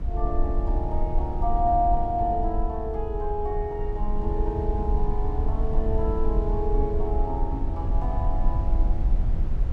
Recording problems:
rumble; below 58 Hz, SNR -1 dB

